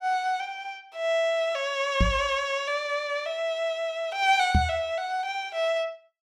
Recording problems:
knock on the microphone; at 2 s and at 4.5 s; peak +7 dB vs average level

